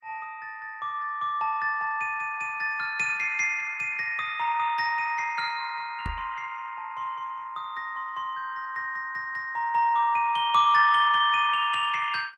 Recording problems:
codec artefacts; Opus, log-spectral distance 3 dB
microphone bump; at 6 s; peak +2 dB vs average level

